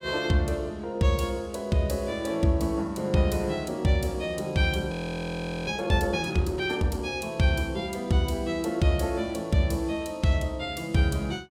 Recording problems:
audio freezing; at 5 s for 1 s

